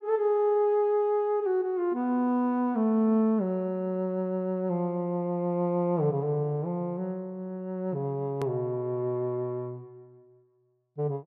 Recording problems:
treble cut off; nothing above 7.3 kHz
click at an edit; at 8.5 s

